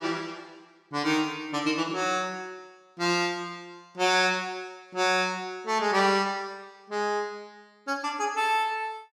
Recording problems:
none

